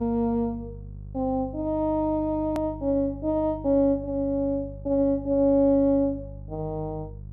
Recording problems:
electrical hum; 50 Hz, harmonics up to 350 Hz, SNR 16 dB
hard cut with a click; at 2.5 s

